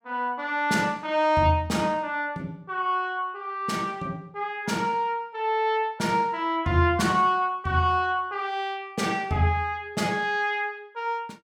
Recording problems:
none

